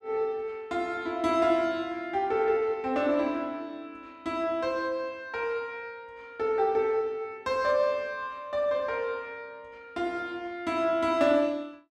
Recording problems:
none

